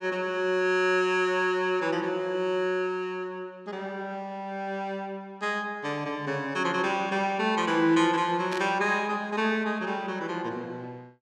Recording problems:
burst of static; at 8.5 s; peak -6 dB vs average level

